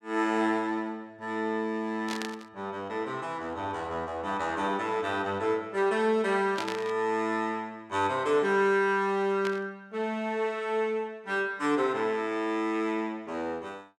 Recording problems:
static burst; at 2 s, at 6.5 s and at 9.5 s; peak -2 dB vs average level

